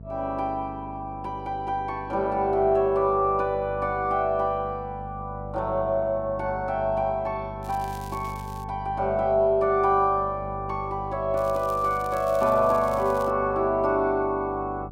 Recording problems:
hum; 50 Hz, harmonics up to 500 Hz, SNR 15 dB
crackling; from 7.5 to 8.5 s and from 11 to 13 s; loose cable, SNR 23 dB

